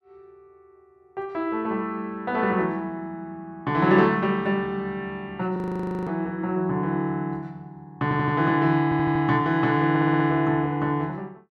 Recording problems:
audio freezing; at 5.5 s for 0.5 s
stutter; at 8 s, at 9 s and at 10 s

